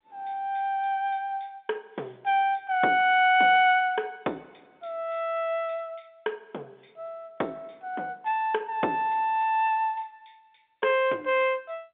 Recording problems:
phone line; 240 Hz to 3.6 kHz, G.711

